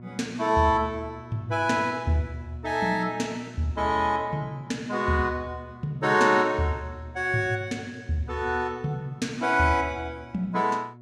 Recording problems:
electrical hum; 60 Hz, harmonics up to 1.1 kHz, SNR 19 dB

